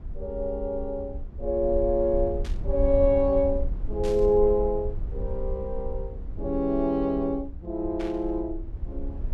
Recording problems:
rumble; below 62 Hz, SNR 9 dB
static burst; at 2.5 s, at 4 s and at 8 s; peak -12 dB vs average level

